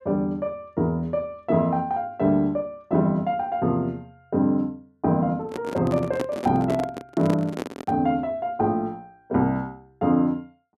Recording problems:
handling noise; from 5.5 to 8 s; peak 0 dB vs average level

